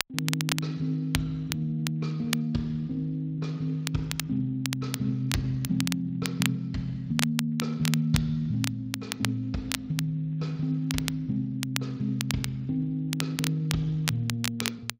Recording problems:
lossy codec; Speex, log-spectral distance 2 dB
crackling; vinyl, SNR 5 dB

